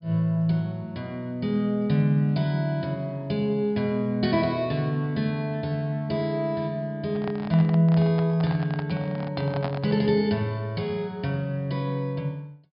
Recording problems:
treble missing; nothing above 5.5 kHz
microphone handling noise; from 7 to 10 s; peak -3 dB vs average level

